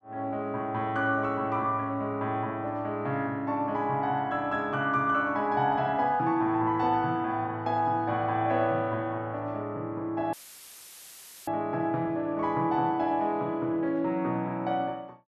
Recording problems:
audio cutting out; at 10 s for 1 s; filled with static

